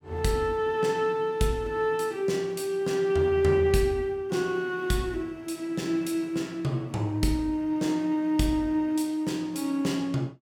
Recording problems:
none

